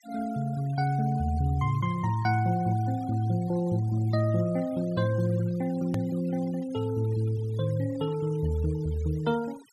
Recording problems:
denoising artefacts; signal-to-artefact ratio 22 dB
hard cut with a click; at 6 s

